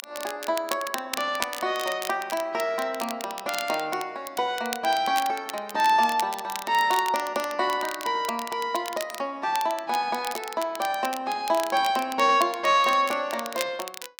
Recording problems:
crackle; vinyl, SNR 11 dB

